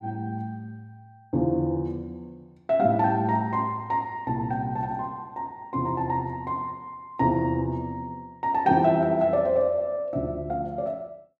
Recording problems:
none

